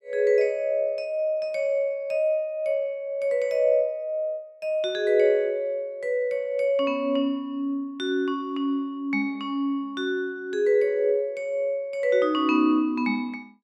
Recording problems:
none

